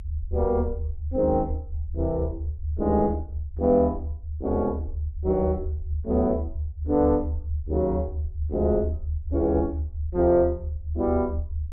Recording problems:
low-frequency rumble; below 78 Hz, strongest tone 74 Hz, SNR 6 dB

